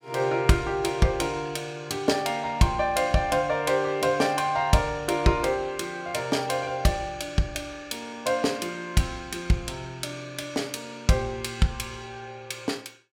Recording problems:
none

